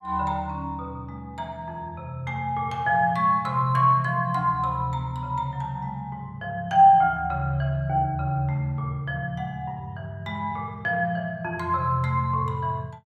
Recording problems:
none

